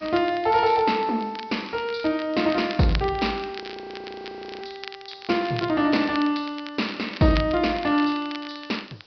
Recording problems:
treble missing; nothing above 5.5 kHz
hiss; SNR 28 dB
crackle; vinyl, SNR 16 dB
frozen audio; at 3.5 s for 1 s

